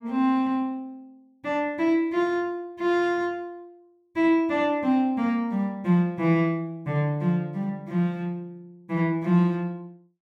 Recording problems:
none

